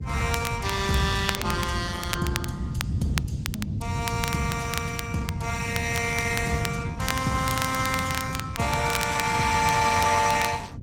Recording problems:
codec artefacts; Opus, log-spectral distance 5 dB, nothing above 16.5 kHz
rumble; below 160 Hz, SNR 5 dB
crackling; vinyl, SNR 9 dB

